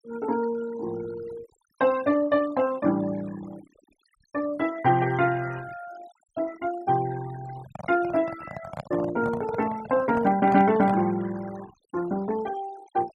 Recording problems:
noise reduction artefacts; signal-to-artefact ratio 19 dB
handling noise; from 7.5 to 11 s; peak -5 dB vs average level

